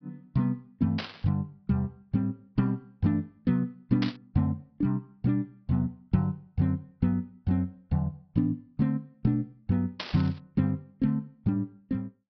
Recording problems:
treble cut off; nothing above 5.5 kHz
burst of static; at 1 s, at 4 s and at 10 s; peak 0 dB vs average level

